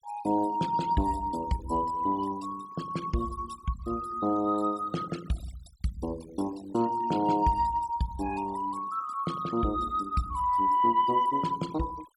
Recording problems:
denoising artefacts; signal-to-artefact ratio 18 dB

